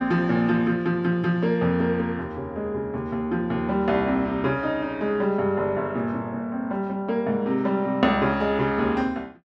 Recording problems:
none

